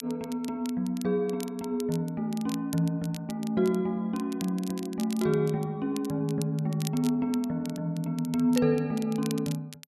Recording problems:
crackling; vinyl, SNR 16 dB

